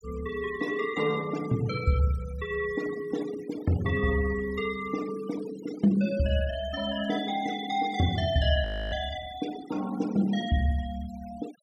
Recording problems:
denoising artefacts; signal-to-artefact ratio 16 dB
frozen audio; at 8.5 s

